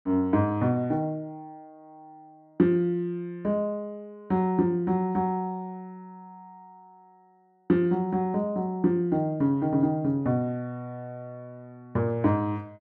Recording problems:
none

